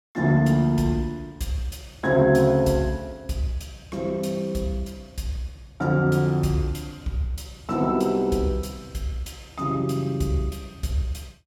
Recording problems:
none

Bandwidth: 16.5 kHz